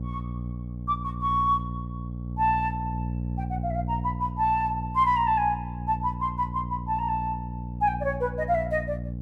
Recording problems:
electrical hum; 60 Hz, harmonics up to 540 Hz, SNR 7 dB

